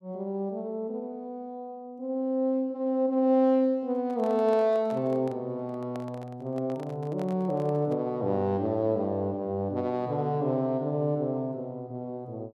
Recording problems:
microphone handling noise; from 4 to 8 s; peak -10 dB vs average level

